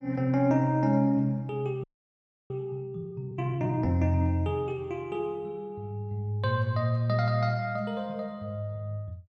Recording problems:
audio freezing; at 2 s for 0.5 s

